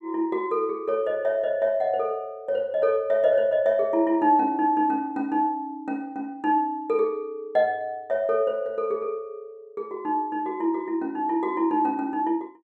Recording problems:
none

